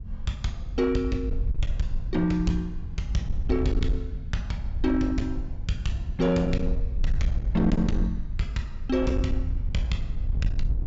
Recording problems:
low-pass filter; nothing above 8 kHz
distortion; hard clipping, signal-to-distortion ratio 11 dB
low-frequency rumble; below 110 Hz, SNR 13 dB
wind noise; below 66 Hz, SNR 3 dB

